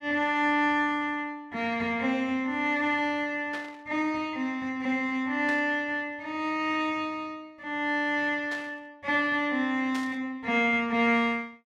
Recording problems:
static burst; 4 times, first at 3.5 s; peak -8 dB vs average level

